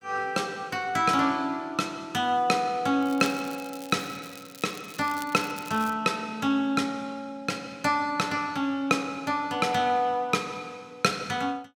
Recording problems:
crackle; from 3 to 6 s; loose cable, SNR 18 dB

